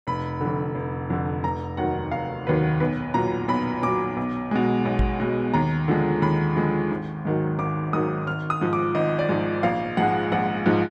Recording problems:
microphone thump; at 5 s; peak +3 dB vs average level

